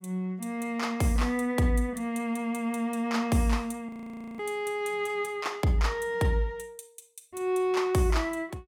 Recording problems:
audio freezing; at 4 s

